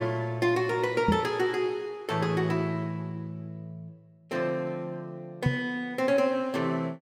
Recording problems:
microphone bump; at 1 s and at 5.5 s; peak +7 dB vs average level

